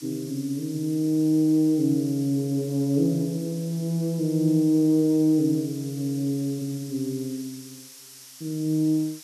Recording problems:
background hiss; SNR 19 dB

